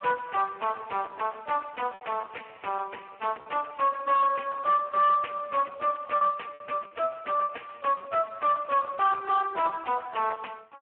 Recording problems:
phone line; 370 Hz to 3.2 kHz, Speex
distorted audio; soft clipping, signal-to-distortion ratio 7 dB
packet loss; 3% of the sound replaced, filled with repeated pitch periods

